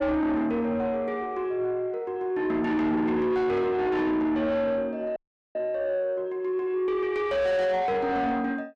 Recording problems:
distortion; soft clipping, signal-to-distortion ratio 7 dB
audio cutting out; at 5 s

